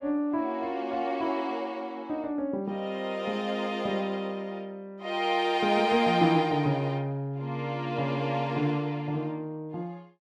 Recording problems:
none

